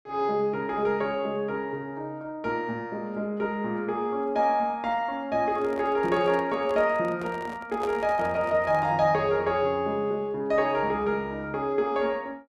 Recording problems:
microphone handling noise; from 5.5 to 9 s; peak -5 dB vs average level

